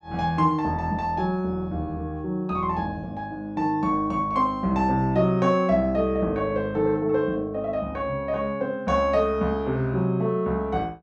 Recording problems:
none

